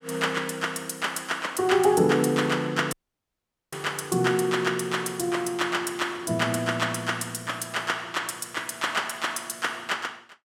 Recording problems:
dropout; at 3 s for 1 s

